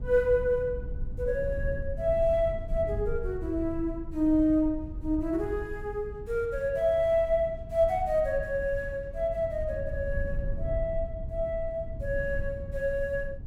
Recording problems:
rumble; below 84 Hz, SNR 9 dB

